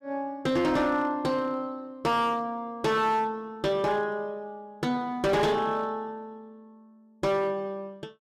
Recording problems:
distorted audio; hard clipping, uneven, signal-to-distortion ratio 10 dB

